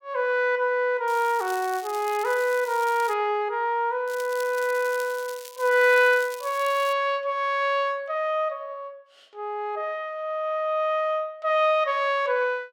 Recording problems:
crackling; from 1 to 3 s and from 4 to 7 s; loose cable, SNR 18 dB

